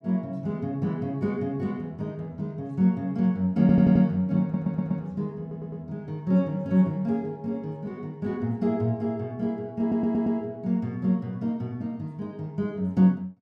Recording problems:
audio stuttering; 4 times, first at 3.5 s

